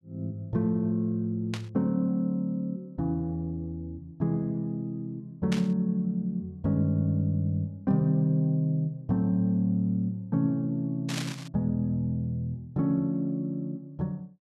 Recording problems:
static burst; at 1.5 s, at 5.5 s and at 11 s; peak -2 dB vs average level

